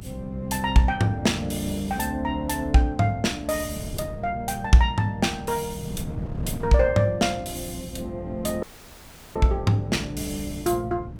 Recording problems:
electrical hum; 60 Hz, harmonics up to 360 Hz, SNR 18 dB
wind noise; below 200 Hz, SNR 14 dB
dropout; at 8.5 s for 0.5 s

